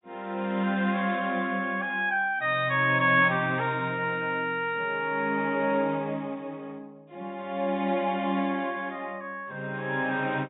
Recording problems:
treble missing; nothing above 4 kHz

